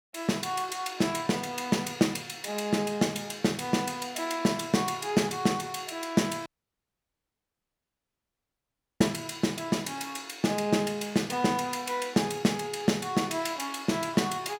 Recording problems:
audio cutting out; at 6.5 s for 2.5 s

